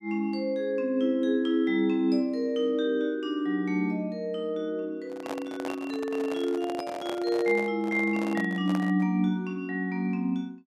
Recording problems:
microphone handling noise; from 5 to 9 s; peak -4 dB vs average level

